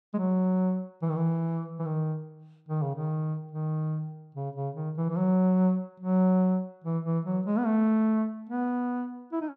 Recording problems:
none

